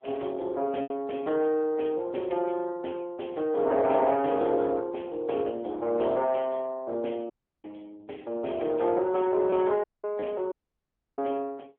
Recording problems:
phone line; 280 Hz to 3.4 kHz, AMR-NB
lost packets; 1% of the sound replaced, filled with repeated pitch periods
audio cutting out; at 7.5 s, at 10 s and at 11 s for 0.5 s

